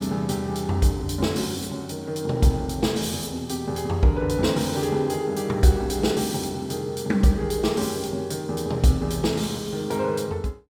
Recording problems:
none

